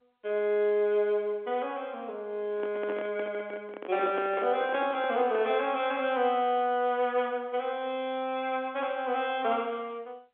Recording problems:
telephone audio; 240 Hz to 3.4 kHz, G.711
microphone handling noise; from 2.5 to 5.5 s; peak -4 dB vs average level

